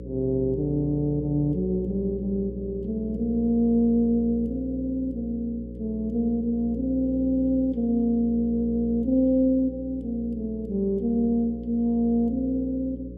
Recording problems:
hum; 60 Hz, harmonics up to 540 Hz, SNR 12 dB

